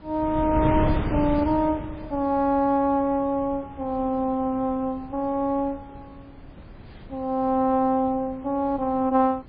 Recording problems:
lossy compression; MP3, log-spectral distance 2 dB
wind on the microphone; below 350 Hz, SNR 8 dB

